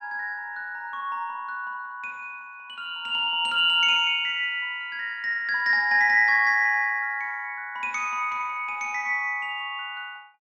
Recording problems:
none

